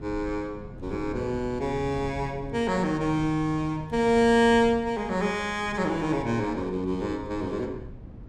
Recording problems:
wind noise; below 200 Hz, SNR 16 dB

